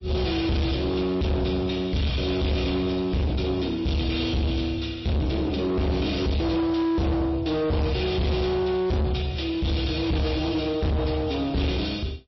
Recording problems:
lossy compression; MP3, log-spectral distance 3 dB, nothing above 5.7 kHz
distortion; soft clipping, signal-to-distortion ratio 6 dB

